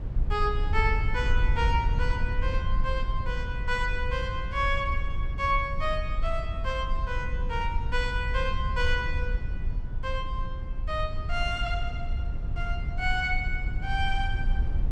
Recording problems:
low-frequency rumble; below 68 Hz, SNR 1 dB

